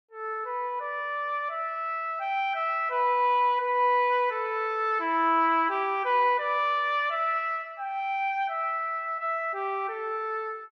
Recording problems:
none

